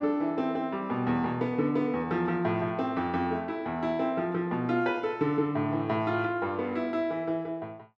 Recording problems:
none

